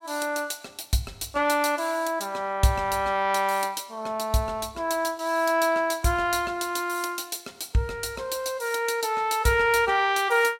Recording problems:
none

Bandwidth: 16 kHz